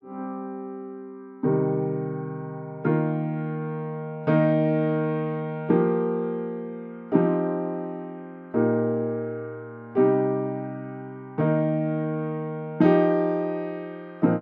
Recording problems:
none

